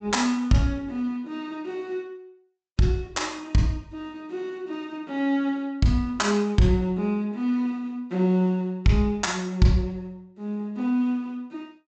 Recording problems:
treble missing; nothing above 8 kHz

